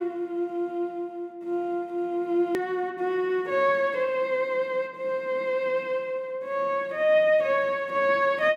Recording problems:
edit click; at 2.5 s

